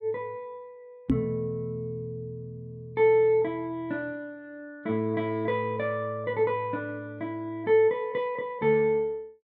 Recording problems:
microphone bump; at 1 s; peak +8 dB vs average level

